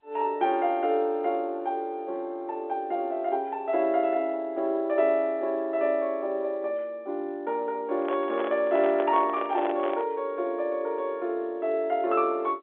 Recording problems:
phone line; 300 Hz to 3.6 kHz, G.711
handling noise; from 8 to 10 s; peak -3 dB vs average level

